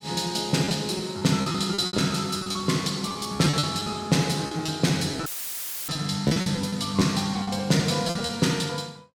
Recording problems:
packet loss; 14% of the sound replaced, filled with repeated pitch periods
audio cutting out; at 5.5 s for 0.5 s; filled with static

